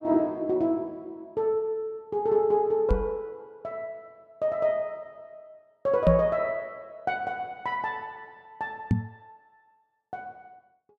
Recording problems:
microphone thump; at 3 s, at 6 s and at 9 s; peak +8 dB vs average level

